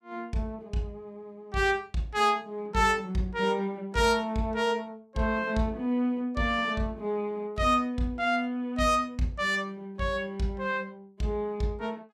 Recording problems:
none

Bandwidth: 15.5 kHz